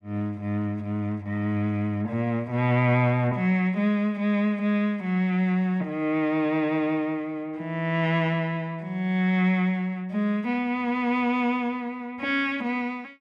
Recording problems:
none

